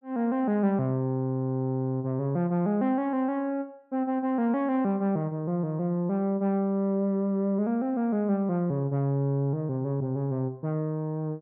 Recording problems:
none

